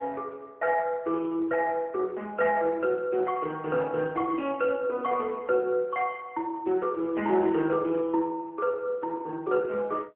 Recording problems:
telephone audio; 240 Hz to 3.1 kHz, AMR-NB

